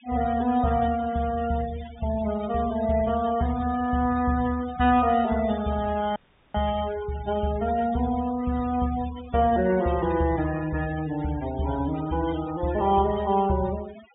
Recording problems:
treble cut off; nothing above 3.7 kHz
denoising artefacts; signal-to-artefact ratio 16 dB
dropout; at 6 s

